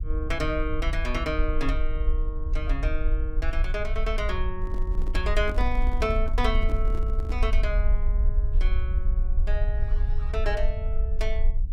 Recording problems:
rumble; below 52 Hz, SNR -4 dB
microphone handling noise; from 4.5 to 7.5 s; peak -2 dB vs average level

